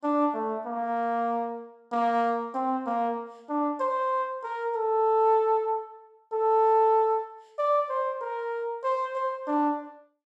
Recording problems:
none

